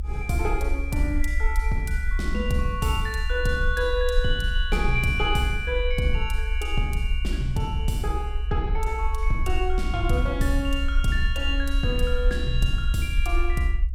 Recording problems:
rumble; below 62 Hz, SNR 1 dB

